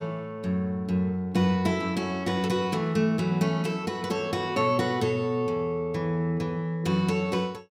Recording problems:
none

